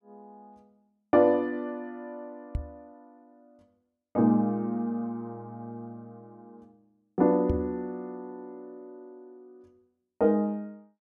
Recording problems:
microphone thump; at 2.5 s and at 7.5 s; peak +1 dB vs average level

